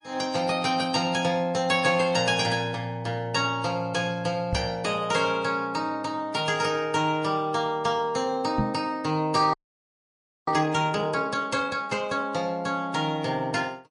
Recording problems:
lossy compression; MP3, log-spectral distance 2 dB, nothing above 10.4 kHz
microphone bump; at 4.5 s and at 8.5 s; peak +3 dB vs average level
frozen audio; at 9.5 s for 1 s

